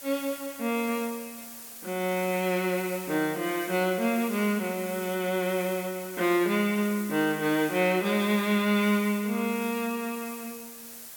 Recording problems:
background hiss; slope 0 dB per octave, SNR 13 dB

